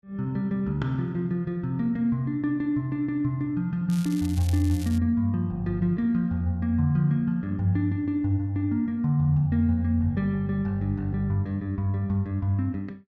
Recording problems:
crackle; from 4 to 5 s; loose cable, SNR 18 dB

